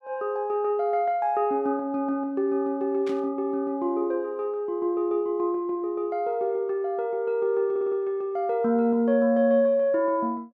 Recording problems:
burst of static; at 3 s; peak -13 dB vs average level
audio stuttering; at 7.5 s

